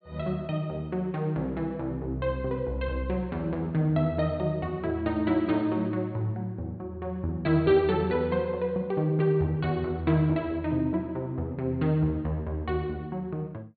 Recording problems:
treble cut off; nothing above 4.5 kHz

